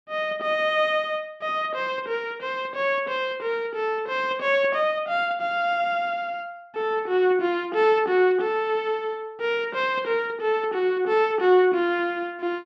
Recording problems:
treble cut off; nothing above 8 kHz

